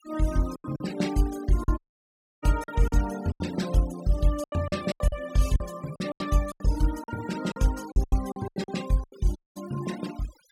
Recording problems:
noise reduction artefacts; signal-to-artefact ratio 15 dB
lost packets; 13% of the sound replaced, filled with silence
dropout; at 2 s for 0.5 s and at 9.5 s

